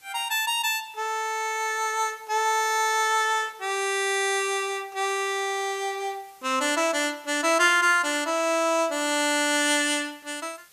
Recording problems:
hiss; slope +1 dB per octave, SNR 29 dB

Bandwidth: 14.5 kHz